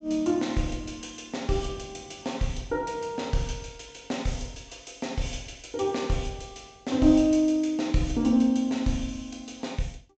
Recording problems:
low-pass filter; nothing above 8 kHz

